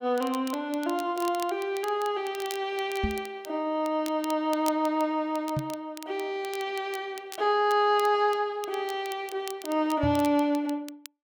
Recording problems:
crackle; vinyl, SNR 17 dB
microphone bump; at 3 s, at 5.5 s and at 10 s; peak +2 dB vs average level

